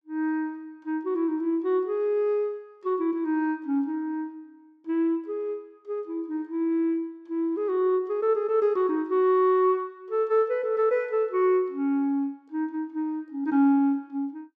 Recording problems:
none

